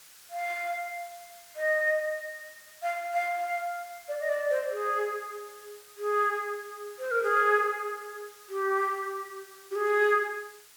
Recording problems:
hiss; SNR 21 dB

